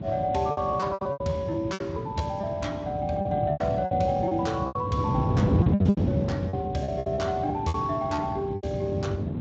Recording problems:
lossy codec; Speex, log-spectral distance 2 dB, nothing above 7.3 kHz
wind noise; below 260 Hz, SNR 1 dB
lost packets; 14% of the sound replaced, filled with repeated pitch periods

